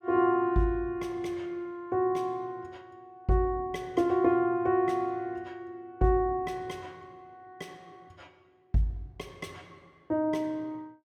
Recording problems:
none

